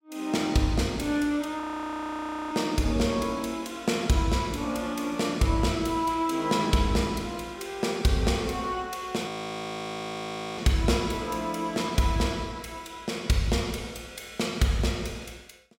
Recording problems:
frozen audio; at 1.5 s for 1 s and at 9.5 s for 1.5 s

